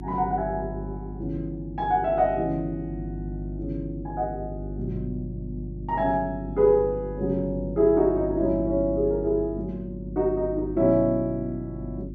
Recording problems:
mains hum; 50 Hz, harmonics up to 350 Hz, SNR 10 dB

